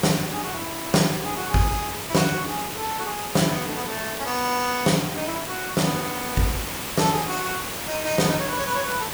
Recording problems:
background hiss; slope -2 dB per octave, SNR 5 dB
crackling; vinyl, SNR 25 dB

